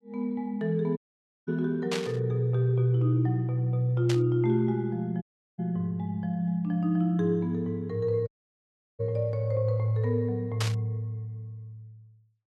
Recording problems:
dropout; at 1 s for 0.5 s, at 5 s and at 8.5 s for 0.5 s
burst of static; at 2 s, at 4 s and at 11 s; peak 0 dB vs average level

